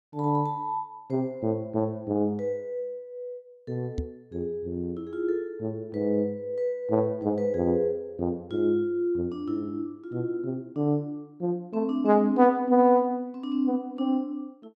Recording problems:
knock on the microphone; at 4 s; peak 0 dB vs average level

